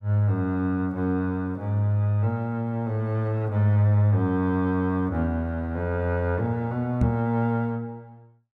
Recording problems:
microphone thump; at 7 s; peak +4 dB vs average level

